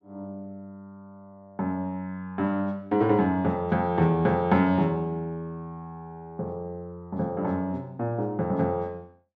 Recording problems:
none

